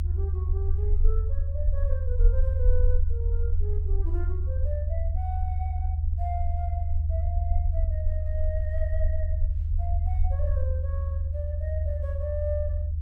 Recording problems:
low-frequency rumble; below 78 Hz, SNR -11 dB

